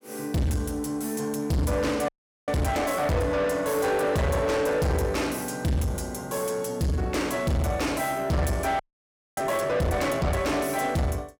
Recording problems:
distortion; soft clipping, signal-to-distortion ratio 7 dB
audio freezing; at 2 s and at 9 s for 0.5 s

